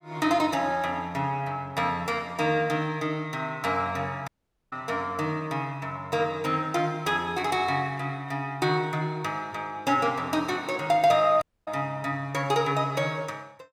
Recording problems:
audio cutting out; at 4.5 s and at 11 s

